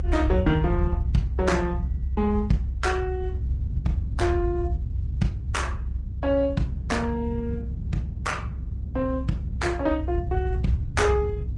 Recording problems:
codec artefacts; Opus, then Vorbis, log-spectral distance 2 dB, nothing above 10.1 kHz
low-frequency rumble; below 82 Hz, strongest tone 64 Hz, SNR 0 dB
wind noise; below 160 Hz, SNR 11 dB

